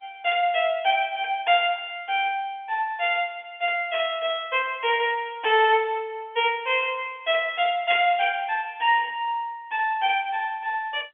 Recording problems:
telephone audio; 280 Hz to 3.4 kHz, G.711

